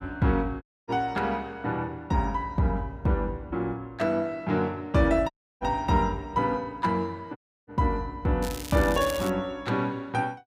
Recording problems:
audio cutting out; at 0.5 s, at 5.5 s and at 7.5 s
crackle; at 8.5 s; loose cable, SNR 12 dB

